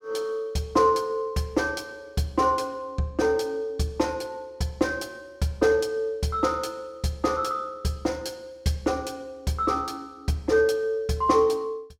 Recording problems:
none

